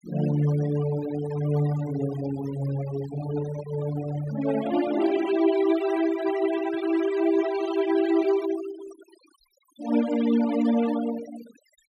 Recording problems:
noise reduction artefacts; signal-to-artefact ratio 13 dB

